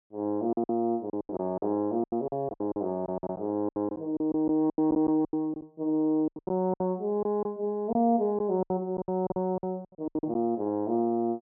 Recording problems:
packet loss; 16% of the sound replaced, filled with silence

